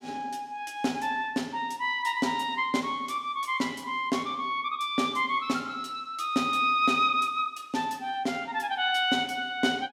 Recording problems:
none

